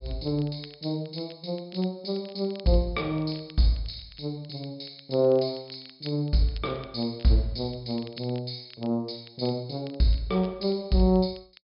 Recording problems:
low-pass filter; nothing above 5.5 kHz
crackle; vinyl, SNR 23 dB

